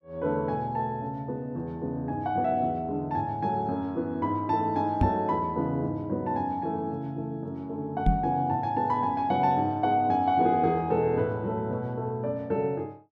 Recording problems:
microphone thump; at 5 s and at 8 s; peak +7 dB vs average level

